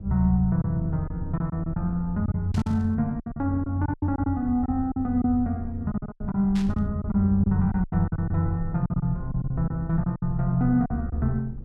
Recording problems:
low-frequency rumble; below 110 Hz, SNR 12 dB
lost packets; 11% of the sound replaced, filled with silence
static burst; at 2.5 s and at 6.5 s; peak -10 dB vs average level

